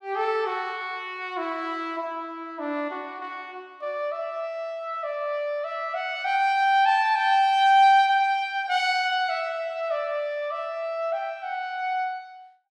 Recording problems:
none

